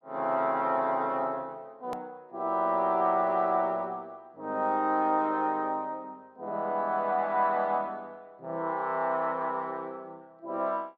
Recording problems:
click at an edit; at 2 s

